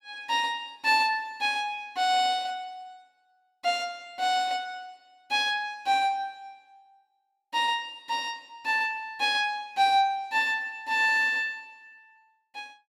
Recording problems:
none

